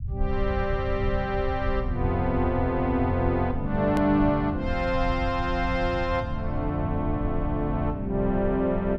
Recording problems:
rumble; below 92 Hz, SNR 7 dB
click at an edit; at 4 s

